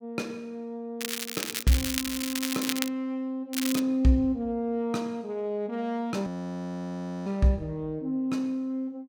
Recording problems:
crackling; from 1 to 3 s and at 3.5 s; loose cable, SNR 2 dB
frozen audio; at 6.5 s for 1 s

